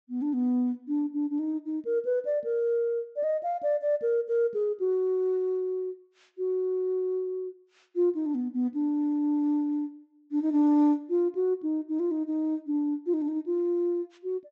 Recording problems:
treble cut off; nothing above 8 kHz

